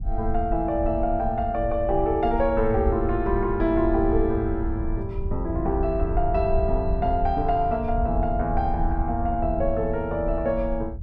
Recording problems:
low-frequency rumble; below 70 Hz, SNR 6 dB

